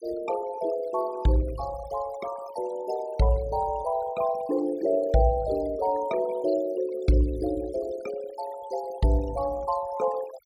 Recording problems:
denoising artefacts; signal-to-artefact ratio 17 dB

